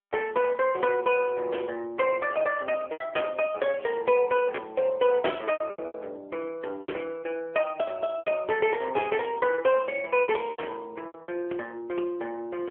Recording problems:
telephone audio; 300 Hz to 3.3 kHz, AMR-NB
packet loss; 7% of the sound replaced, filled with repeated pitch periods

